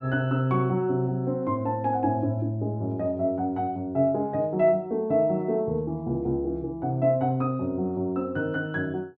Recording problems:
none

